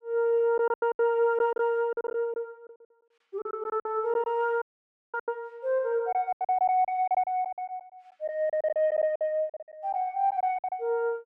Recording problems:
packet loss; 14% of the sound replaced, filled with silence
audio cutting out; at 4.5 s for 0.5 s

